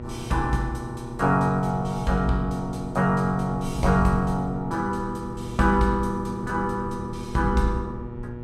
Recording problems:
hum; 60 Hz, harmonics up to 1.4 kHz, SNR 12 dB
wind on the microphone; below 130 Hz, SNR 14 dB

